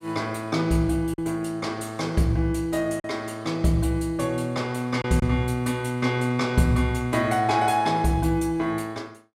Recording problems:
packet loss; 1.3% of the sound replaced, filled with silence

